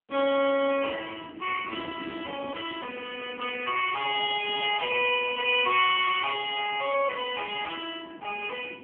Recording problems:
telephone audio; 300 Hz to 3.3 kHz, AMR-NB
wind noise; below 420 Hz, SNR 17 dB

